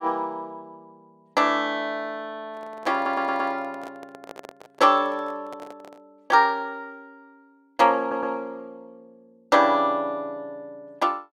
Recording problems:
handling noise; from 2.5 to 6 s; peak -11 dB vs average level
stutter; at 3 s and at 8 s

